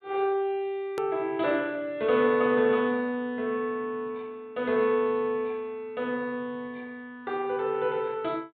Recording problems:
treble cut off; nothing above 4 kHz
edit click; at 1 s

